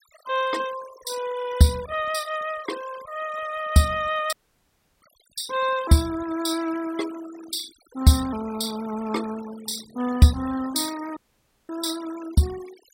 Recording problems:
noise reduction artefacts; signal-to-artefact ratio 15 dB
audio cutting out; at 4.5 s for 0.5 s and at 11 s for 0.5 s

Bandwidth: 16 kHz